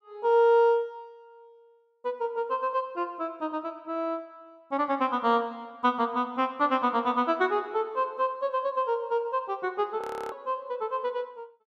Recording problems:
frozen audio; at 10 s

